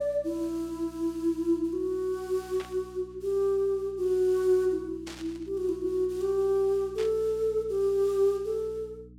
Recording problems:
hum; 60 Hz, harmonics up to 300 Hz, SNR 22 dB
burst of static; at 2.5 s, at 5 s and at 7 s; peak -10 dB vs average level

